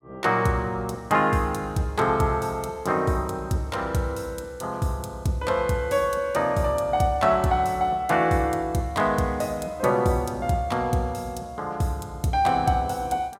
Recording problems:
none

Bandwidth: 16 kHz